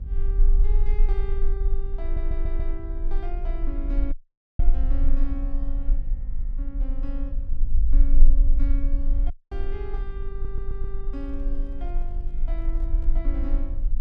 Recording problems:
hum; 50 Hz, harmonics up to 800 Hz, SNR 8 dB
low-frequency rumble; below 34 Hz, strongest tone 20 Hz, SNR -12 dB
audio stuttering; at 2 s and at 10 s
audio cutting out; at 4 s and at 9.5 s
handling noise; from 11 to 13 s; peak -10 dB vs average level

